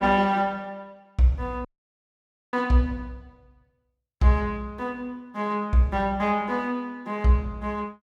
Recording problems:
audio cutting out; at 1.5 s for 1 s

